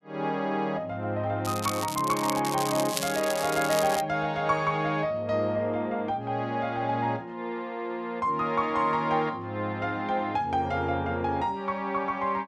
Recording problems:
crackle; from 1.5 to 4 s; loose cable, SNR 7 dB

